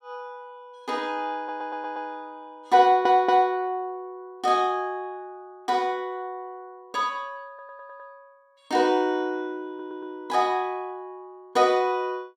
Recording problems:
audio stuttering; 4 times, first at 1.5 s

